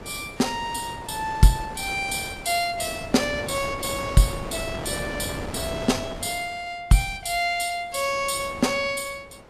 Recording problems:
wind noise; below 870 Hz, SNR 10 dB

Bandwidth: 14 kHz